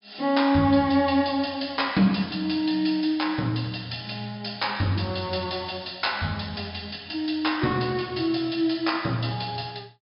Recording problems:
treble cut off; nothing above 5.5 kHz

